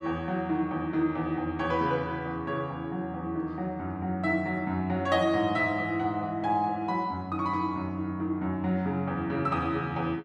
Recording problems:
none

